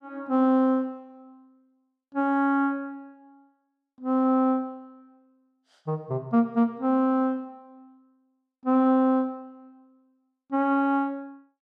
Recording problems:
none

